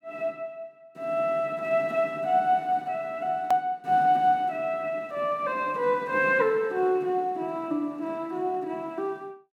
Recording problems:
click at an edit; at 3.5 s

